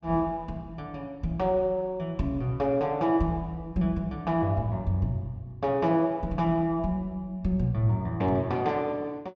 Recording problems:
treble missing; nothing above 8 kHz

